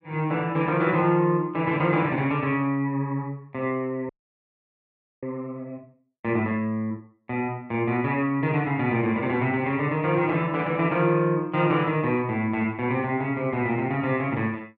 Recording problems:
audio freezing; at 4 s for 1 s

